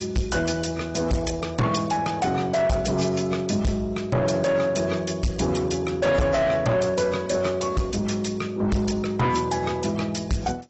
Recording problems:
lossy codec; AAC, log-spectral distance 4 dB, nothing above 7.8 kHz
distortion; soft clipping, signal-to-distortion ratio 6 dB

